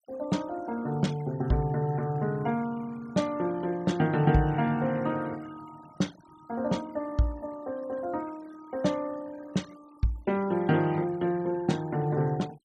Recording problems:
noise reduction artefacts; signal-to-artefact ratio 23 dB

